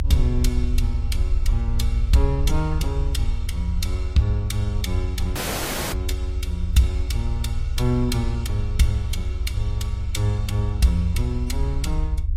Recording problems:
lossy codec; AAC, log-spectral distance 2 dB, nothing above 14.7 kHz
rumble; below 76 Hz, SNR 1 dB
audio cutting out; at 5.5 s for 0.5 s

